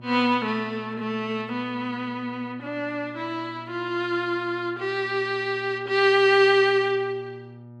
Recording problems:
electrical hum; 60 Hz, harmonics up to 1.2 kHz, SNR 20 dB

